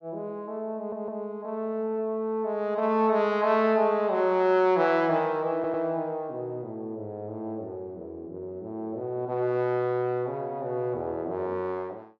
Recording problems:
audio stuttering; at 1 s and at 5.5 s

